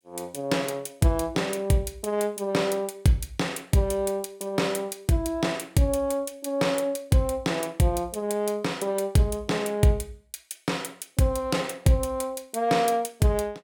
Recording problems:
none

